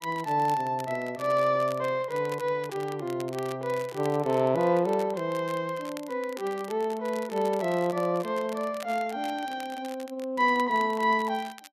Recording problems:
crackling; vinyl, SNR 20 dB

